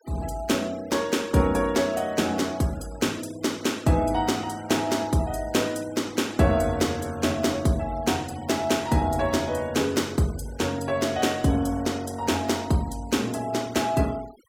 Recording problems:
denoising artefacts; signal-to-artefact ratio 21 dB

